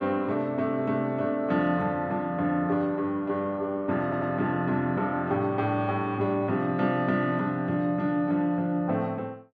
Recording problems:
stutter; at 4 s

